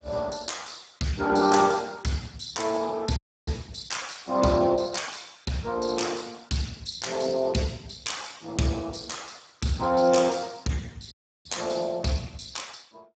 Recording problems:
lossy codec; Speex, log-spectral distance 8 dB, nothing above 7.6 kHz
audio cutting out; at 3 s and at 11 s

